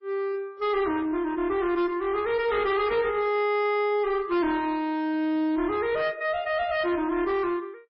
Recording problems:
lossy compression; MP3, log-spectral distance 2 dB, nothing above 5 kHz
distortion; hard clipping, uneven, signal-to-distortion ratio 9 dB

